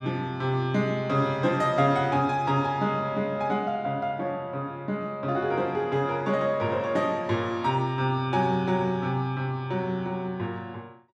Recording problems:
none

